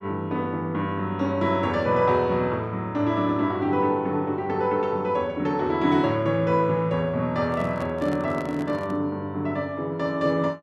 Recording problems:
handling noise; from 7.5 to 9 s; peak -9 dB vs average level

